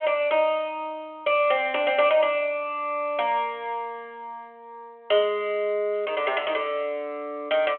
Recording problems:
phone line; 260 Hz to 3.4 kHz, G.726

